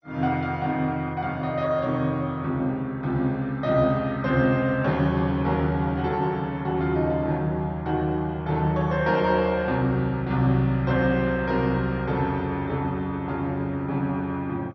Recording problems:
codec artefacts; MP2, log-spectral distance 2 dB, nothing above 5.8 kHz

